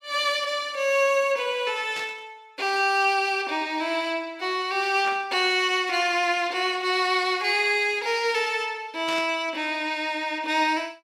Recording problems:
burst of static; at 2 s, at 5 s and at 9 s; peak -7 dB vs average level

